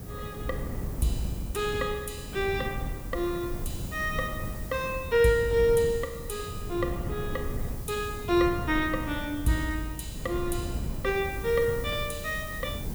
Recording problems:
background hiss; slope +5 dB per octave, SNR 16 dB
wind on the microphone; below 170 Hz, SNR 8 dB

